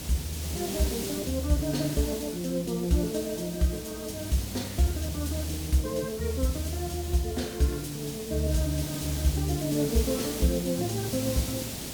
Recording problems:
hum; 60 Hz, harmonics up to 300 Hz, SNR 21 dB
background hiss; SNR 7 dB

